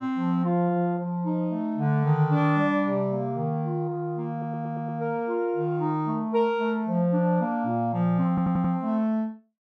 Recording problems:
stutter; at 4.5 s and at 8.5 s

